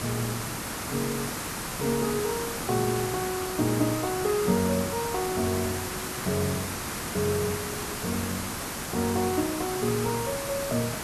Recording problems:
background hiss; slope -3 dB per octave, SNR 2 dB

